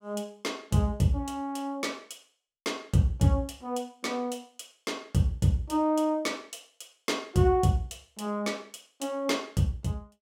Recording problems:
none

